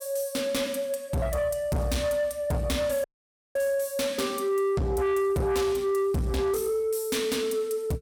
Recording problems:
distortion; soft clipping, signal-to-distortion ratio 7 dB
audio cutting out; at 3 s for 0.5 s

